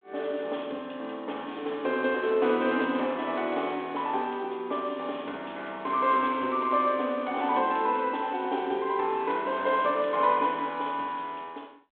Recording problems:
telephone audio; 220 Hz to 3.5 kHz, G.726

